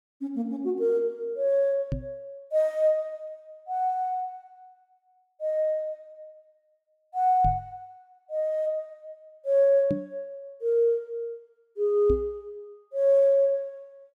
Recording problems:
knock on the microphone; 4 times, first at 2 s; peak +1 dB vs average level

